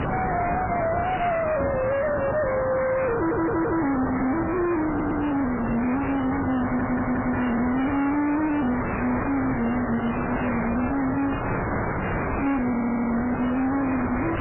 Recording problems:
lossy codec; MP3, then AAC, log-spectral distance 7 dB, nothing above 2.7 kHz
distortion; hard clipping, uneven, signal-to-distortion ratio 6 dB
hiss; SNR 4 dB
microphone bump; at 1.5 s, at 5.5 s and at 11 s; peak -1 dB vs average level
stutter; 4 times, first at 3 s

